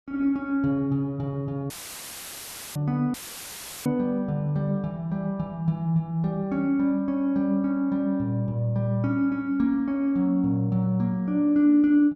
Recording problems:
dropout; at 1.5 s for 1 s and at 3 s for 0.5 s; filled with static

